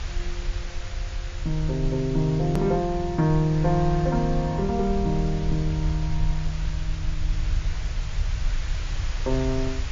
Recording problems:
codec artefacts; MP3, log-spectral distance 2 dB, nothing above 13.1 kHz
hiss; slope -1 dB per octave, SNR 16 dB
low-frequency rumble; below 64 Hz, SNR 6 dB
click at an edit; at 2.5 s

